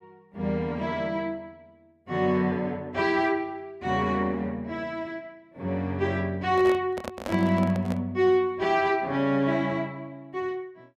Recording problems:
handling noise; from 6.5 to 8 s; peak -3 dB vs average level

